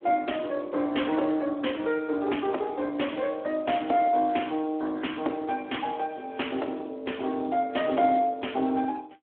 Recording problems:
phone line; 220 Hz to 3.4 kHz, Speex

